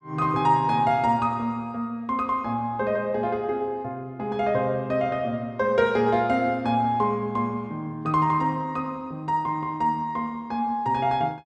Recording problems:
none

